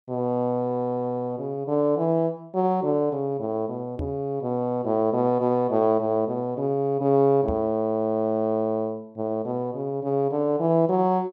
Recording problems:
microphone bump; at 4 s and at 7.5 s; peak -3 dB vs average level

